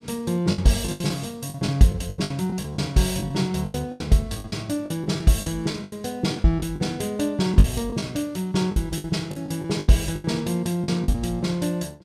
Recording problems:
lost packets; 13% of the sound replaced, filled with the last packet

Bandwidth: 14 kHz